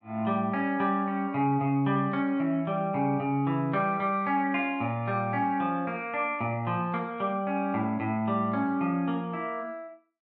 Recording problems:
none

